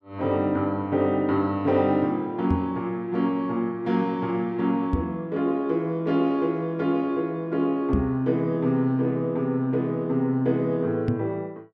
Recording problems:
microphone thump; 4 times, first at 2.5 s; peak +4 dB vs average level

